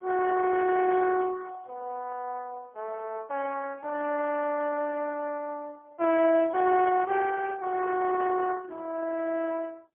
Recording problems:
phone line; 280 Hz to 2.6 kHz, AMR-NB, then MP3

